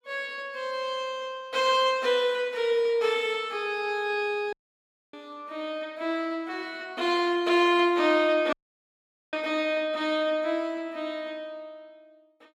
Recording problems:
dropout; at 4.5 s for 0.5 s and at 8.5 s for 1 s

